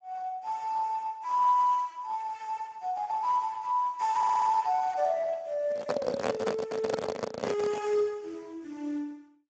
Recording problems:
lossy compression; Speex, log-spectral distance 3 dB, nothing above 7.3 kHz
audio stuttering; at 4 s
microphone handling noise; from 5.5 to 8 s; peak +3 dB vs average level

